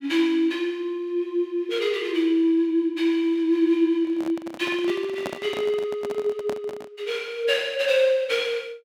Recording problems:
handling noise; from 4 to 7 s; peak -3 dB vs average level

